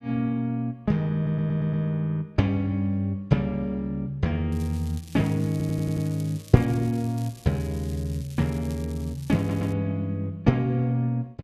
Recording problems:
audio stuttering; at 1 s, at 5.5 s and at 9.5 s
crackle; from 4.5 to 9.5 s; loose cable, SNR 22 dB

